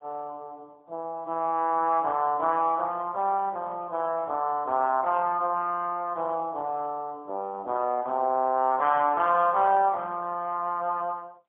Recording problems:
telephone audio; 190 Hz to 3.3 kHz, AMR-NB, then MP3

